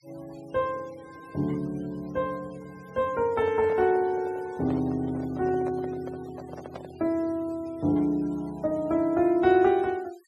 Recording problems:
noise reduction artefacts; signal-to-artefact ratio 26 dB
microphone handling noise; from 3 to 7 s; peak -9 dB vs average level

